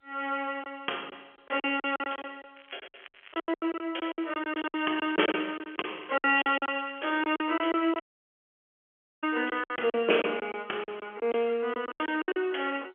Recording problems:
phone line; 320 Hz to 3.3 kHz, G.711
lost packets; 17% of the sound replaced, filled with silence
crackling; from 2.5 to 3.5 s and from 4.5 to 9.5 s; loose cable, SNR 23 dB
dropout; at 8 s for 1 s

